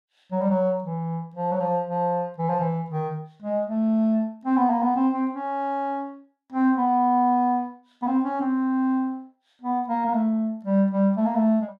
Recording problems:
none

